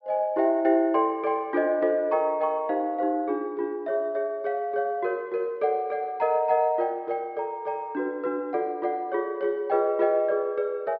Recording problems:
treble cut off; nothing above 5.5 kHz

